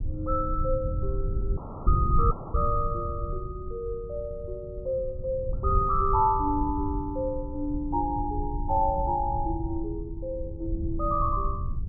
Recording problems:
rumble; below 92 Hz, SNR 4 dB
audio cutting out; at 1.5 s and at 2.5 s

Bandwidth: 1.5 kHz